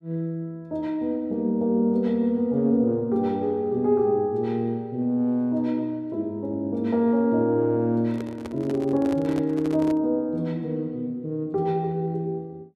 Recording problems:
microphone handling noise; from 8 to 10 s; peak -5 dB vs average level

